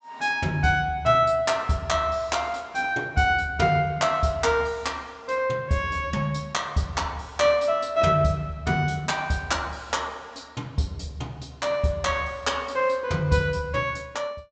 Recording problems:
treble missing; nothing above 8 kHz

